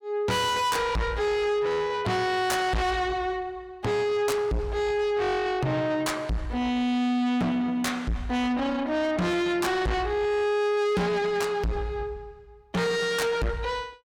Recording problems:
distorted audio; soft clipping, signal-to-distortion ratio 6 dB

